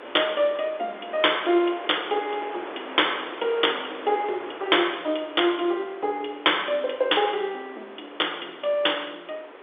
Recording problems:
phone line; 300 Hz to 3.6 kHz, G.711
wind on the microphone; below 1.7 kHz, SNR 14 dB

